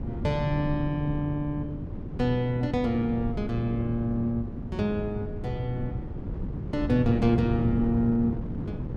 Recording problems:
wind on the microphone; below 230 Hz, SNR 6 dB

